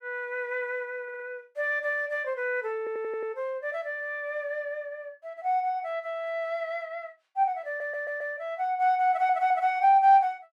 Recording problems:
audio stuttering; 4 times, first at 1 s

